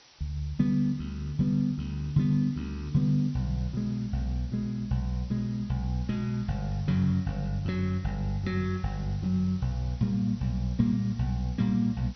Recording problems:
lossy codec; MP2, log-spectral distance 4 dB, nothing above 13.1 kHz
hiss; slope +1 dB per octave, SNR 25 dB

